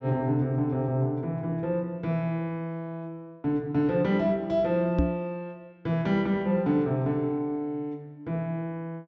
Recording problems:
treble cut off; nothing above 8 kHz
microphone bump; at 5 s; peak +6 dB vs average level

